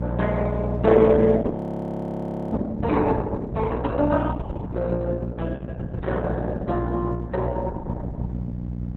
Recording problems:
codec artefacts; Opus, then Opus, log-spectral distance 3 dB, nothing above 15.1 kHz
electrical hum; 60 Hz, harmonics up to 540 Hz, SNR 5 dB
audio freezing; at 1.5 s for 1 s

